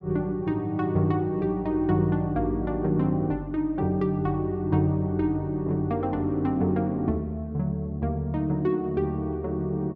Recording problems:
none

